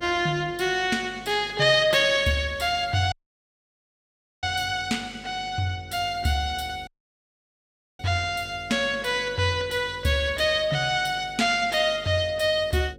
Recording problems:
electrical hum; 50 Hz, harmonics up to 550 Hz, SNR 23 dB
audio cutting out; at 3 s for 1.5 s and at 7 s for 1 s

